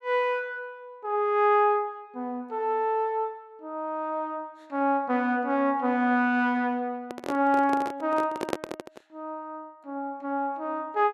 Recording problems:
handling noise; from 7 to 9 s; peak +3 dB vs average level

